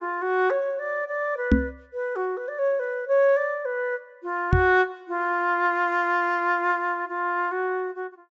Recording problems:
low-pass filter; nothing above 8 kHz
microphone thump; at 1.5 s and at 4.5 s; peak +9 dB vs average level

